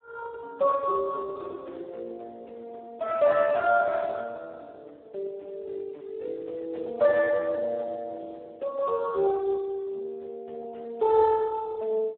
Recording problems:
phone line; 340 Hz to 2.6 kHz, Speex

